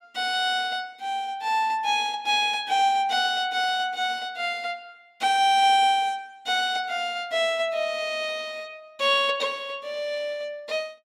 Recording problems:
none

